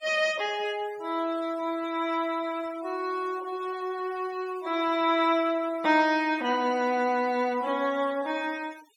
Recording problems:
denoising artefacts; signal-to-artefact ratio 21 dB

